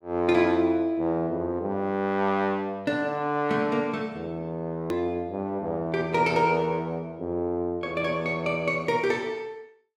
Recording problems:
hard cut with a click; at 5 s

